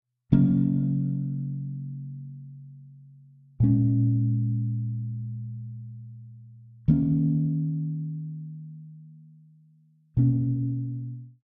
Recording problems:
none

